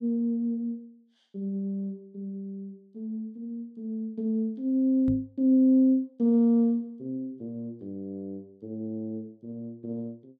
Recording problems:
microphone thump; at 5 s; peak -2 dB vs average level

